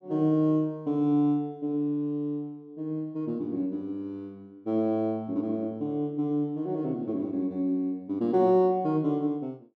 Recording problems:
none

